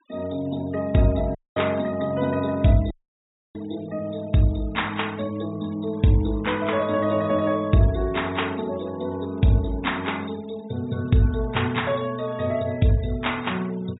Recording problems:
low-pass filter; nothing above 4 kHz
noise reduction artefacts; signal-to-artefact ratio 23 dB
audio cutting out; at 1.5 s and at 3 s for 0.5 s

